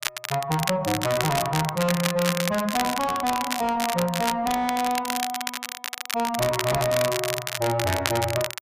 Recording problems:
distorted audio; soft clipping, signal-to-distortion ratio 5 dB
crackle; vinyl, SNR 4 dB

